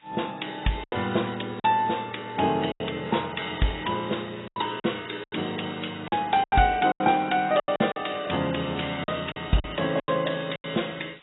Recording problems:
codec artefacts; AAC, log-spectral distance 12 dB, nothing above 3.8 kHz
background hiss; SNR 29 dB
packet loss; 9% of the sound replaced, filled with silence

